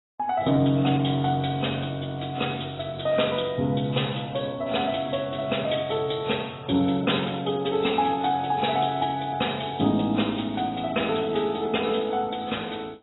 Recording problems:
lossy compression; AAC, log-spectral distance 9 dB, nothing above 3.9 kHz

